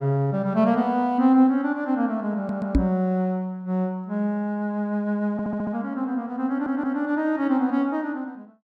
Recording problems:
stutter; at 2.5 s, at 5.5 s and at 6.5 s
microphone thump; at 2.5 s; peak +7 dB vs average level

